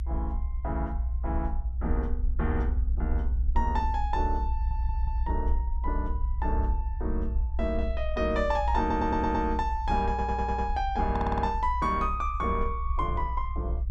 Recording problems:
low-frequency rumble; below 62 Hz, strongest tone 60 Hz, SNR 1 dB
audio stuttering; 4 times, first at 4.5 s

